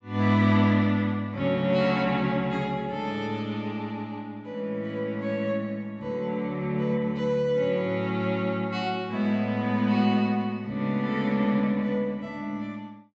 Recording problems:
treble cut off; nothing above 8 kHz

